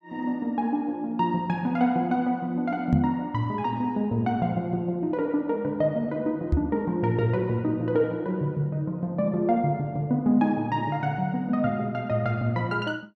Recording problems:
knock on the microphone; at 3 s and at 6.5 s; peak +7 dB vs average level

